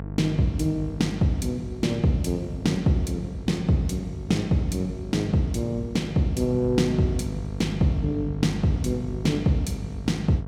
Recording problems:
electrical hum; 50 Hz, harmonics up to 950 Hz, SNR 10 dB

